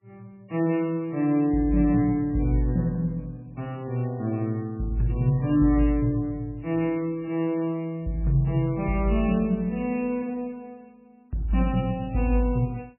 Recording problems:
codec artefacts; MP3, log-spectral distance 2 dB, nothing above 2.4 kHz

